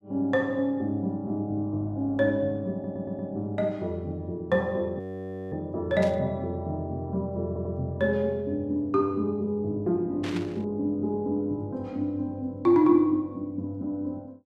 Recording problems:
audio stuttering; at 2.5 s and at 7.5 s
frozen audio; at 5 s for 0.5 s
burst of static; at 6 s and at 10 s; peak -7 dB vs average level

